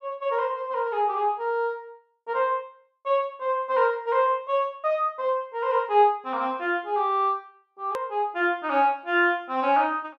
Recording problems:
hard cut with a click; at 8 s

